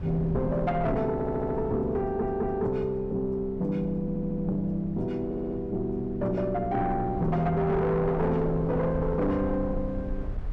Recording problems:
distorted audio; soft clipping, signal-to-distortion ratio 10 dB
low-frequency rumble; below 92 Hz, SNR 12 dB
audio stuttering; 4 times, first at 1 s

